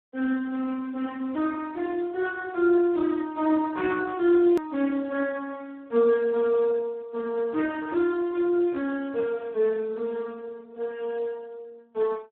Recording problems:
telephone audio; 240 Hz to 2.5 kHz, Speex
hard cut with a click; at 4.5 s

